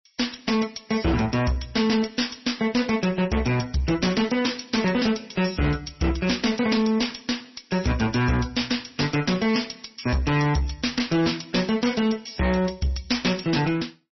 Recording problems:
codec artefacts; MP3, then MP3, log-spectral distance 7 dB, nothing above 5.8 kHz
distortion; hard clipping, uneven, signal-to-distortion ratio 7 dB

